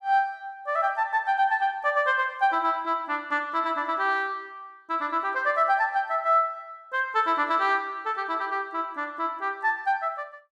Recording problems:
none

